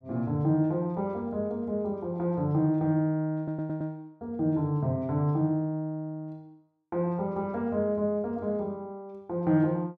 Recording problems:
stutter; at 3.5 s

